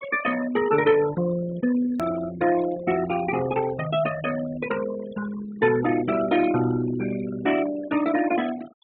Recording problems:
treble cut off; nothing above 4 kHz
noise reduction artefacts; signal-to-artefact ratio 12 dB
hard cut with a click; at 2 s

